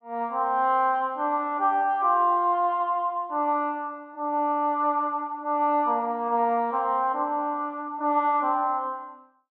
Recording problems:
none

